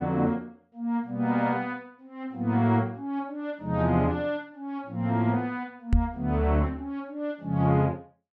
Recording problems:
knock on the microphone; at 6 s; peak +7 dB vs average level

